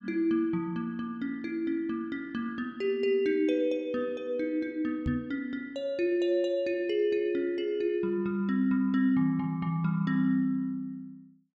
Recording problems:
microphone bump; at 5 s; peak 0 dB vs average level

